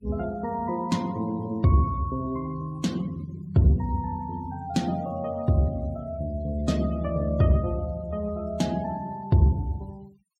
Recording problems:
noise reduction artefacts; signal-to-artefact ratio 25 dB

